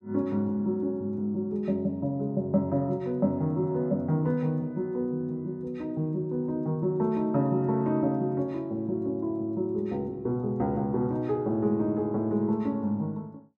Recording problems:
none

